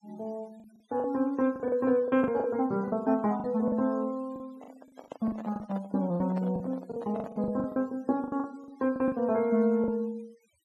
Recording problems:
denoising artefacts; signal-to-artefact ratio 26 dB
lost packets; 12% of the sound replaced, filled with the last packet
handling noise; from 4.5 to 7.5 s; peak -8 dB vs average level

